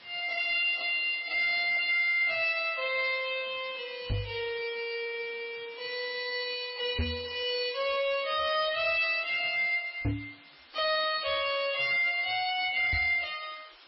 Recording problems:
codec artefacts; MP3, log-spectral distance 8 dB, nothing above 4.9 kHz
distortion; hard clipping, signal-to-distortion ratio 11 dB
background hiss; SNR 24 dB
microphone thump; 4 times, first at 4 s; peak +2 dB vs average level

